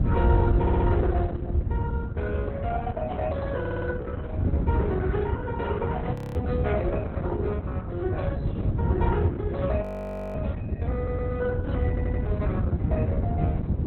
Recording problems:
lossy codec; Opus, log-spectral distance 2 dB, nothing above 16.6 kHz
wind noise; below 110 Hz, SNR -6 dB
stutter; 4 times, first at 0.5 s
frozen audio; at 6 s and at 10 s for 0.5 s

